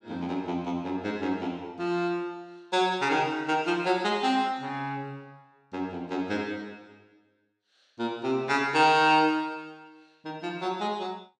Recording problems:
none

